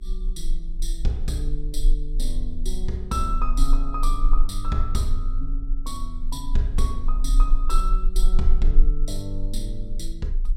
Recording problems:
hum; 50 Hz, harmonics up to 400 Hz, SNR 22 dB
low-frequency rumble; below 30 Hz, strongest tone 24 Hz, SNR -3 dB

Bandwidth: 16 kHz